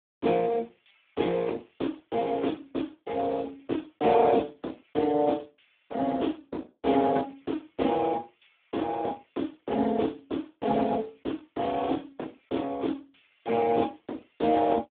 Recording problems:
phone line; 220 Hz to 3.7 kHz, Speex

